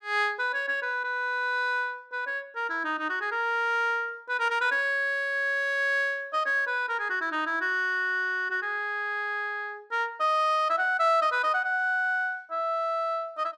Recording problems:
none

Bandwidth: 13.5 kHz